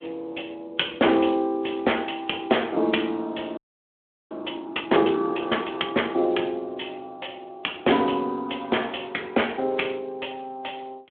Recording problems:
phone line; 260 Hz to 3.4 kHz, Speex
audio freezing; at 3.5 s for 0.5 s

